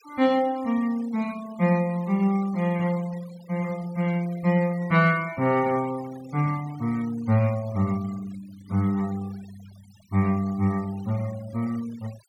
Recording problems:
noise reduction artefacts; signal-to-artefact ratio 22 dB

